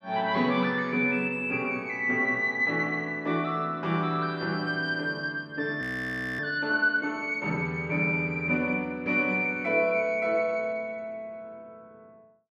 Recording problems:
audio freezing; at 6 s for 0.5 s

